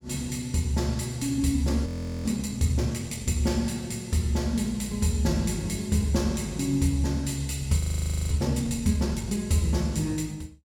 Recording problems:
frozen audio; at 2 s and at 8 s for 0.5 s

